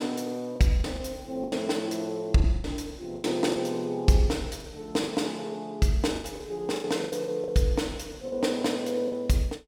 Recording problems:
lost packets; 10% of the sound replaced, filled with the last packet

